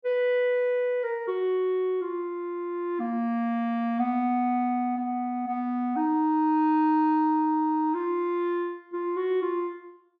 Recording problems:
none

